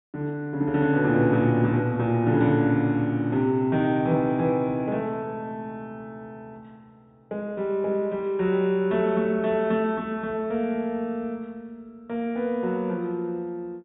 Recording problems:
treble missing; nothing above 4 kHz

